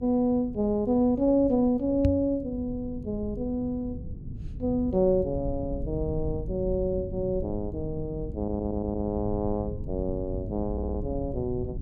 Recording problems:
hum; 50 Hz, harmonics up to 450 Hz, SNR 20 dB
rumble; below 130 Hz, SNR 10 dB
microphone bump; at 2 s; peak +6 dB vs average level
stutter; at 8.5 s and at 11 s

